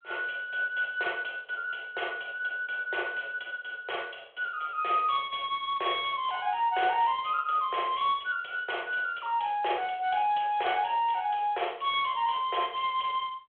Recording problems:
telephone audio; 370 Hz to 3.4 kHz, G.726

